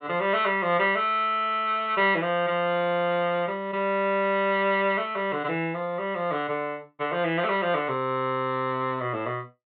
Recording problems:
treble missing; nothing above 4 kHz

